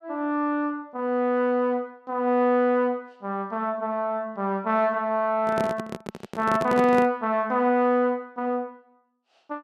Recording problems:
microphone handling noise; from 5.5 to 7 s; peak -1 dB vs average level

